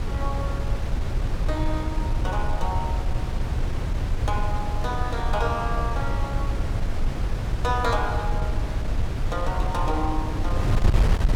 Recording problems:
wind on the microphone; below 100 Hz, SNR -3 dB

